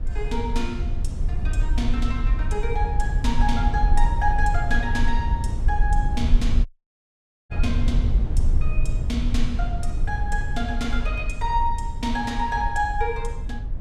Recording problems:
low-frequency rumble; below 62 Hz, strongest tone 22 Hz, SNR -2 dB
audio cutting out; at 6.5 s for 1 s

